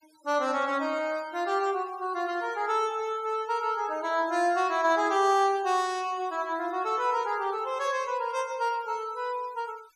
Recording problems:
noise reduction artefacts; signal-to-artefact ratio 23 dB

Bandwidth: 14.5 kHz